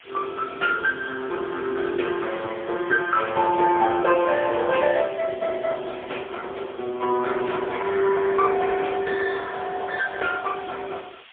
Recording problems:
telephone audio; 280 Hz to 3.4 kHz, AMR-NB, then MP3
hiss; SNR 23 dB

